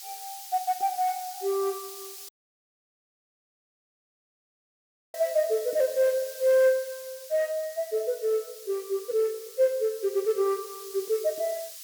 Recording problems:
background hiss; slope +7 dB per octave, SNR 14 dB
dropout; at 2.5 s for 3 s

